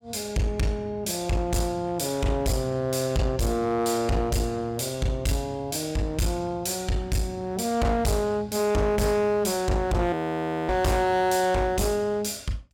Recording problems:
distorted audio; hard clipping, uneven, signal-to-distortion ratio 6 dB
frozen audio; at 10 s for 0.5 s

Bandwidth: 17 kHz